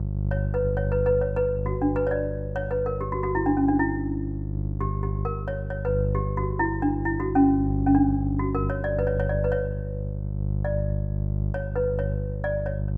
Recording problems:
hum; 50 Hz, harmonics up to 400 Hz, SNR 3 dB

